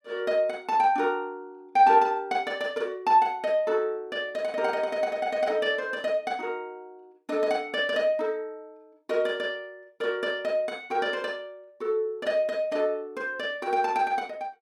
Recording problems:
none

